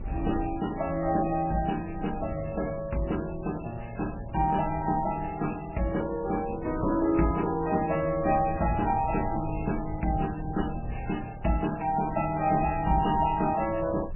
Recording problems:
lossy compression; MP3, then MP3, log-spectral distance 6 dB, nothing above 2.9 kHz
wind on the microphone; below 110 Hz, SNR 13 dB

